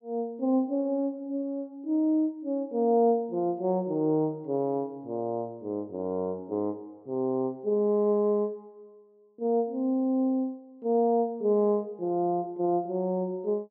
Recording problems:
none

